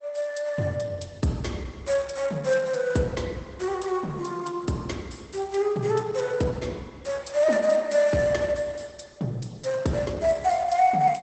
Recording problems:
lossy compression; Opus, log-spectral distance 4 dB, nothing above 8.2 kHz

